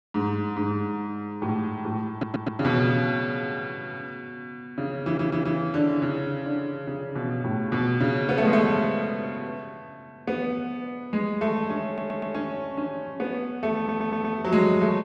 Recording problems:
stutter; 4 times, first at 2 s

